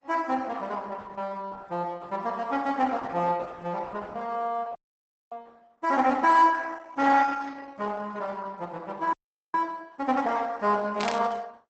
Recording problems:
codec artefacts; Opus, log-spectral distance 4 dB, nothing above 7.8 kHz
frozen audio; at 5 s for 0.5 s and at 9 s
burst of static; at 11 s; peak -3 dB vs average level

